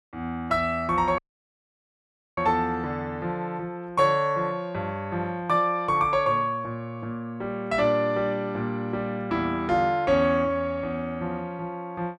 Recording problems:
audio cutting out; at 1 s for 1 s

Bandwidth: 13.5 kHz